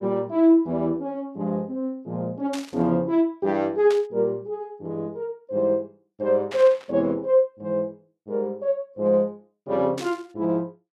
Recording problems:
static burst; 4 times, first at 2.5 s; peak -7 dB vs average level

